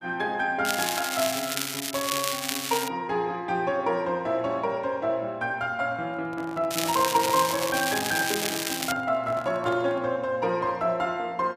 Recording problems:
crackling; from 0.5 to 3 s and from 6.5 to 9 s; loose cable, SNR 2 dB
handling noise; from 6 to 10 s; peak -7 dB vs average level

